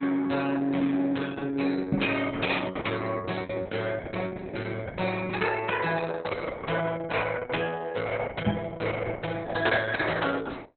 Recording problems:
codec artefacts; Opus, log-spectral distance 5 dB, nothing above 4.1 kHz
knock on the microphone; at 2 s and at 8.5 s; peak +5 dB vs average level

